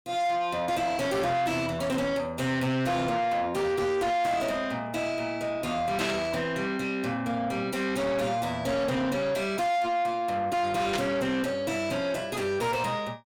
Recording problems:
distorted audio; soft clipping, signal-to-distortion ratio 6 dB
burst of static; at 6 s and at 11 s; peak 0 dB vs average level

